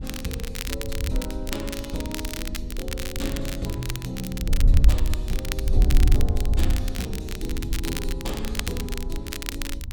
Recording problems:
wind on the microphone; below 66 Hz, SNR -6 dB
crackling; vinyl, SNR 2 dB

